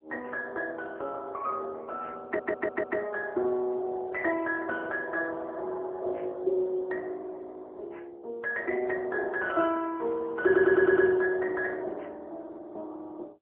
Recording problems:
telephone audio; 280 Hz to 3 kHz, AMR-NB
audio stuttering; at 2.5 s and at 10 s

